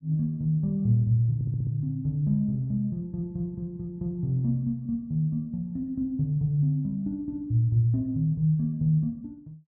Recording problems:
audio stuttering; at 1.5 s

